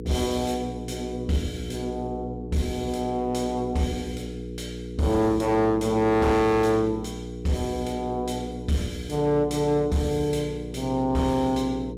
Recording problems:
distorted audio; hard clipping, signal-to-distortion ratio 11 dB
mains hum; 60 Hz, harmonics up to 480 Hz, SNR 10 dB

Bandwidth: 16 kHz